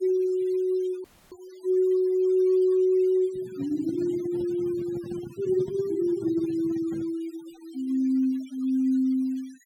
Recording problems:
noise reduction artefacts; signal-to-artefact ratio 26 dB
dropout; at 1 s
handling noise; from 3.5 to 7 s; peak -8 dB vs average level

